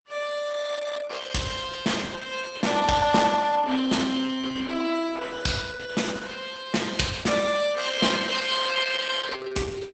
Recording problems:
lossy compression; Opus, log-spectral distance 6 dB, nothing above 8 kHz

